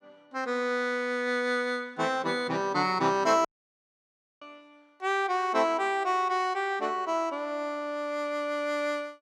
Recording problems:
audio cutting out; at 3.5 s for 1 s

